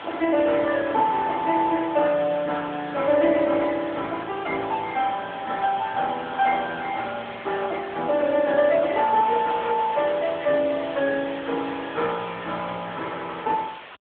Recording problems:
phone line; 280 Hz to 3.4 kHz, AMR-NB
hiss; SNR 16 dB

